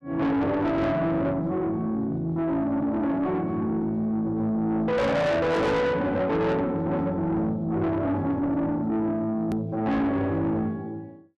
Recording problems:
distortion; soft clipping, signal-to-distortion ratio 7 dB
edit click; at 9.5 s

